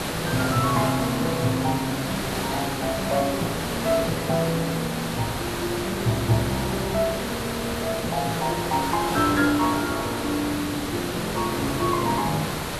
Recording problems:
background hiss; slope -4 dB per octave, SNR 3 dB

